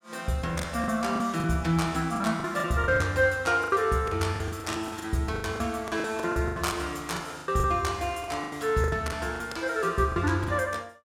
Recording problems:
packet loss; 15% of the sound replaced, filled with the last packet

